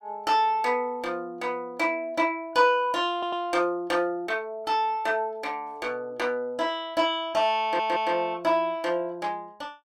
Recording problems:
stutter; at 3 s and at 7.5 s

